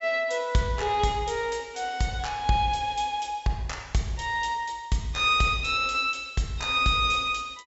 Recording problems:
low-pass filter; nothing above 8 kHz

